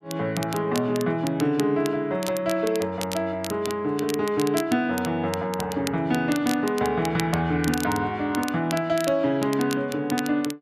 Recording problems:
crackling; vinyl, SNR 13 dB

